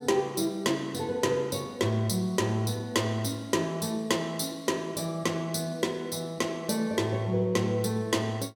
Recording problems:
none

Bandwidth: 17 kHz